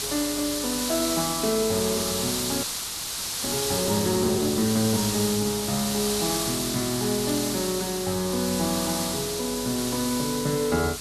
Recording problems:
electrical hum; 50 Hz, harmonics up to 600 Hz, SNR 21 dB
background hiss; SNR 1 dB
crackling; from 1.5 to 4.5 s, from 5.5 to 6.5 s and from 6.5 to 8 s; loose cable, SNR 23 dB
audio freezing; at 2.5 s for 1 s

